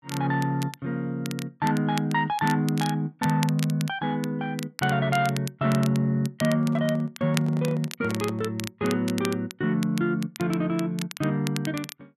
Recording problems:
crackle; vinyl, SNR 14 dB
microphone handling noise; from 6.5 to 8.5 s; peak -10 dB vs average level

